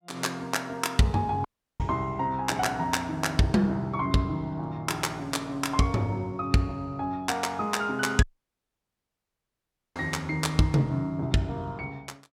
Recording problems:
audio cutting out; at 1.5 s and at 8 s for 1.5 s

